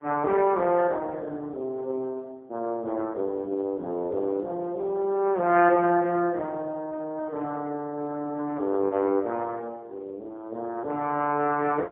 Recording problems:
telephone audio; 240 Hz to 2.8 kHz, AMR-NB, then MP3

